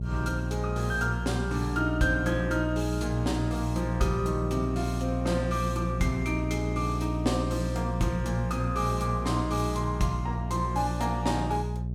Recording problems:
electrical hum; 60 Hz, harmonics up to 420 Hz, SNR 2 dB

